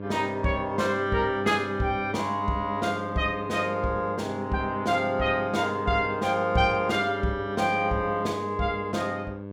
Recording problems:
electrical hum; 50 Hz, harmonics up to 1.2 kHz, SNR 11 dB

